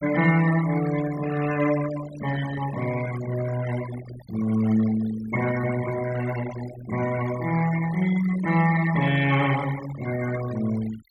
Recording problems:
noise reduction artefacts; signal-to-artefact ratio 13 dB

